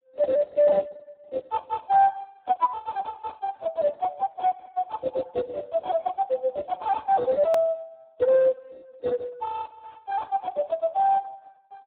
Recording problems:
phone line; 900 Hz to 2.2 kHz, Speex
edit click; at 7.5 s

